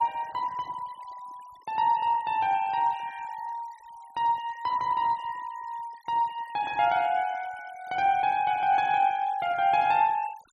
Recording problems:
noise reduction artefacts; signal-to-artefact ratio 24 dB

